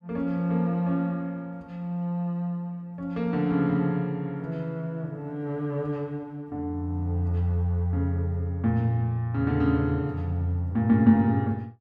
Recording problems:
none

